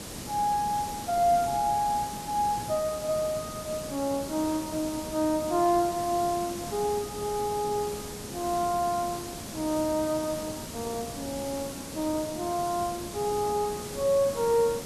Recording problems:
hiss; SNR 9 dB

